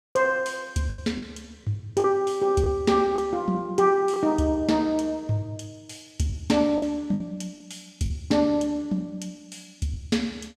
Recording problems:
packet loss; 4% of the sound replaced, filled with the last packet

